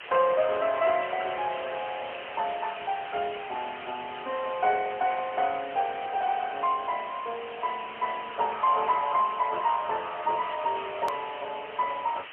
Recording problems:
telephone audio; 300 Hz to 3.2 kHz, AMR-NB, then MP3
hiss; SNR 12 dB
hard cut with a click; at 11 s

